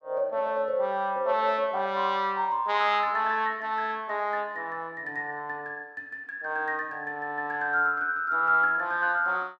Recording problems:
none

